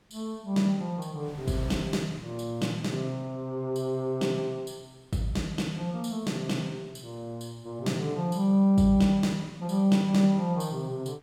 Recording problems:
wind noise; below 1.9 kHz, SNR 27 dB

